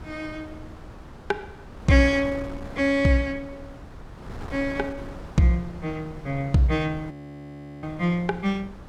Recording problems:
wind on the microphone; below 560 Hz, SNR 16 dB
frozen audio; at 7 s for 0.5 s

